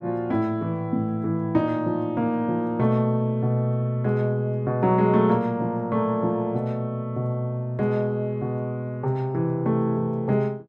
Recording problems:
none

